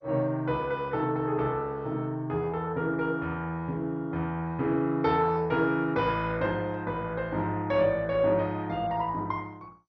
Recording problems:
lossy codec; MP2, log-spectral distance 2 dB, nothing above 5.2 kHz

